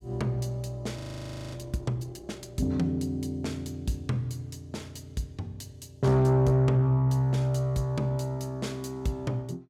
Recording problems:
distorted audio; soft clipping, signal-to-distortion ratio 11 dB
audio freezing; at 1 s for 0.5 s

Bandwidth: 16.5 kHz